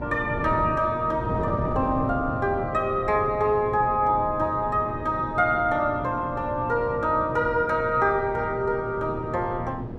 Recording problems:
electrical hum; 60 Hz, harmonics up to 1.2 kHz, SNR 16 dB
wind noise; below 350 Hz, SNR 10 dB

